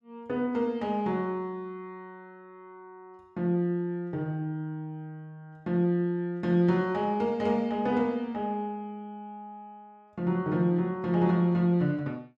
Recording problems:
none

